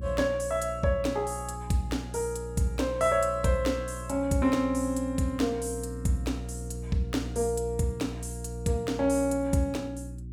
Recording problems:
hum; 60 Hz, harmonics up to 360 Hz, SNR 10 dB

